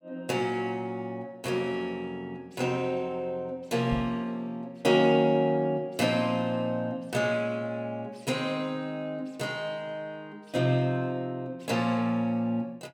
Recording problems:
knock on the microphone; at 4 s; peak -2 dB vs average level

